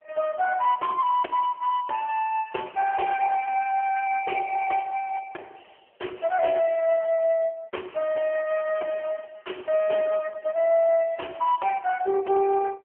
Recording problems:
phone line; 320 Hz to 3.1 kHz, AMR-NB

